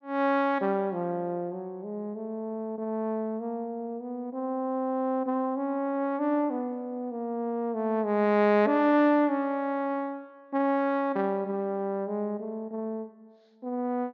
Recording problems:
treble cut off; nothing above 6.8 kHz

